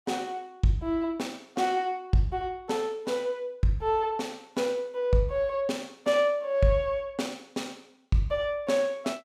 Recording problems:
none

